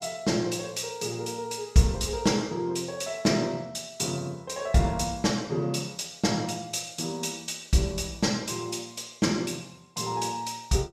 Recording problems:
none

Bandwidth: 15.5 kHz